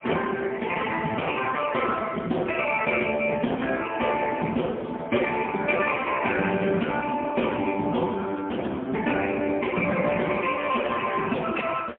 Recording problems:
telephone audio; 220 Hz to 3.3 kHz, AMR-NB, then MP3

